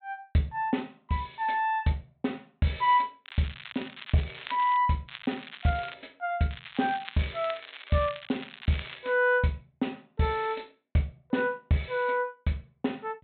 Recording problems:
low-pass filter; nothing above 4 kHz
crackling; from 3.5 to 5 s, at 5 s and from 6.5 to 9 s; loose cable, SNR 14 dB

